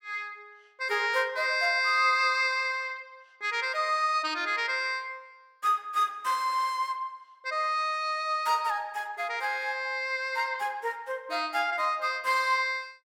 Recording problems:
none

